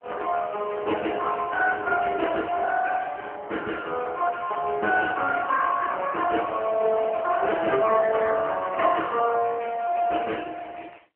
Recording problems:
telephone audio; 280 Hz to 3.1 kHz, AMR-NB

